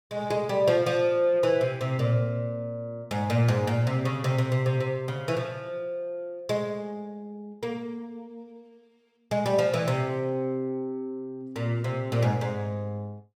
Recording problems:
none

